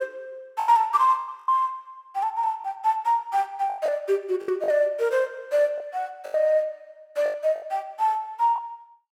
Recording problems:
lost packets; 8% of the sound replaced, filled with the last packet

